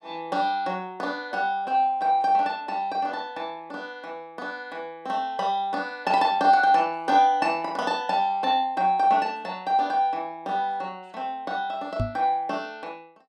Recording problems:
knock on the microphone; at 12 s; peak +1 dB vs average level

